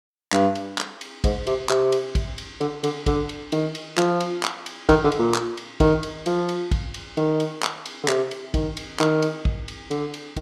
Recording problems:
none

